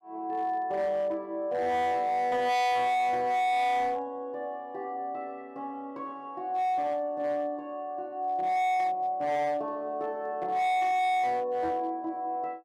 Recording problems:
distortion; hard clipping, signal-to-distortion ratio 7 dB

